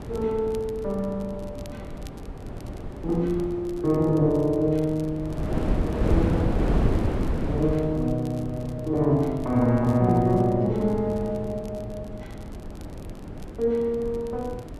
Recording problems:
wind on the microphone; below 320 Hz, SNR 7 dB
crackle; vinyl, SNR 29 dB

